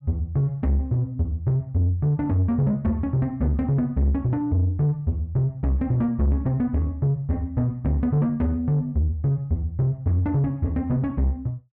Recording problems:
distortion; soft clipping, signal-to-distortion ratio 10 dB

